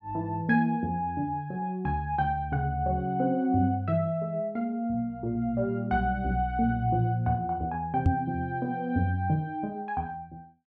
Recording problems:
knock on the microphone; at 8 s; peak +8 dB vs average level

